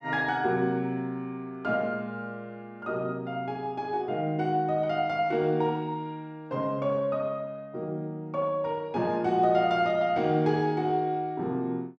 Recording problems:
none

